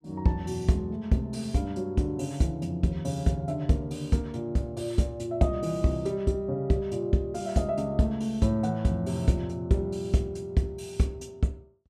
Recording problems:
none

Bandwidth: 14.5 kHz